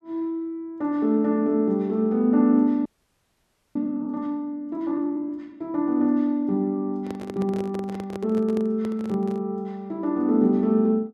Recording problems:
audio freezing; at 3 s for 1 s
microphone handling noise; from 7 to 9.5 s; peak -8 dB vs average level

